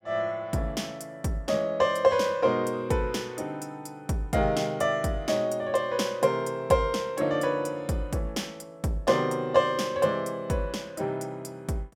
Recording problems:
none

